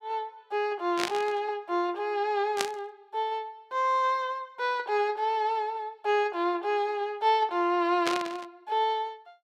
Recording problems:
static burst; at 1 s, at 2.5 s and at 8 s; peak +4 dB vs average level

